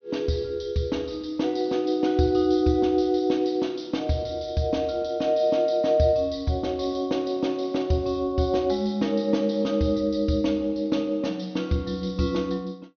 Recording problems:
treble missing; nothing above 6.2 kHz

